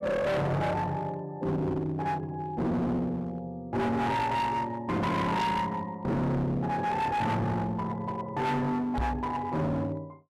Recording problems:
distorted audio; hard clipping, uneven, signal-to-distortion ratio 6 dB
microphone thump; at 9 s; peak +2 dB vs average level

